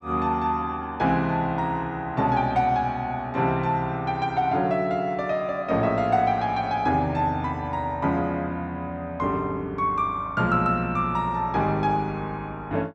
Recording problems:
none

